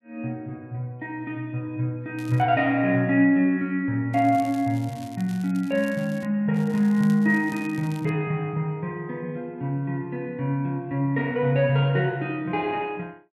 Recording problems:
crackling; at 2 s, from 4 to 6.5 s and from 6.5 to 8 s; loose cable, SNR 24 dB

